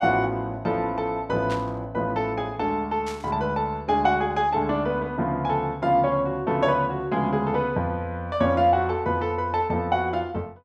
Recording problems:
burst of static; at 1.5 s and at 3 s; peak -8 dB vs average level

